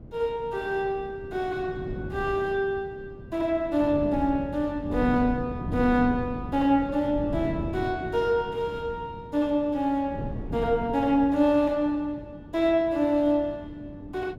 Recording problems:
wind on the microphone; below 270 Hz, SNR 11 dB

